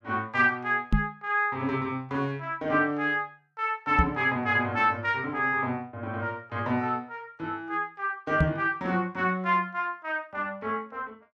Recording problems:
knock on the microphone; at 1 s, at 4 s and at 8.5 s; peak +7 dB vs average level

